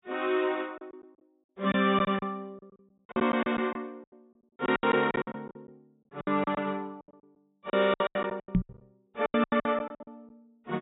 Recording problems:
treble missing; nothing above 4 kHz
packet loss; 19% of the sound replaced, filled with silence
microphone thump; at 8.5 s; peak +8 dB vs average level

